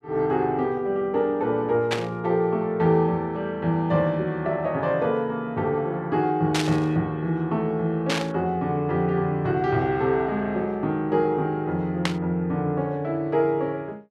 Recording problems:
static burst; 4 times, first at 2 s; peak +3 dB vs average level

